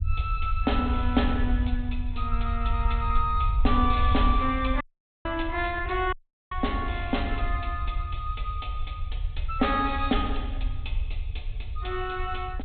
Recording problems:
low-pass filter; nothing above 4 kHz
rumble; below 70 Hz, SNR 2 dB
audio cutting out; at 5 s and at 6 s

